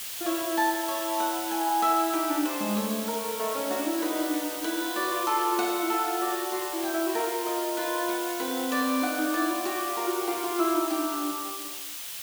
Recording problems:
background hiss; slope +3 dB per octave, SNR 6 dB

